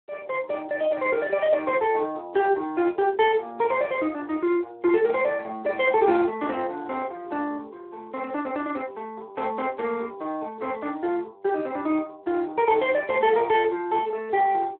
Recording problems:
telephone audio; 300 Hz to 3.5 kHz, Speex

